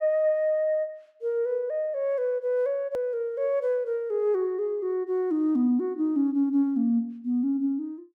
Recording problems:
hard cut with a click; at 3 s

